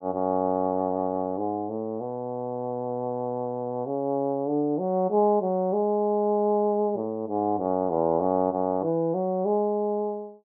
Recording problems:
none

